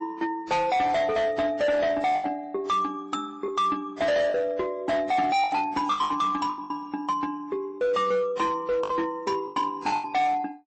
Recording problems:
lossy compression; MP3, then AAC, log-spectral distance 2 dB, nothing above 8.2 kHz
distortion; hard clipping, signal-to-distortion ratio 8 dB
lost packets; 7% of the sound replaced, filled with the last packet

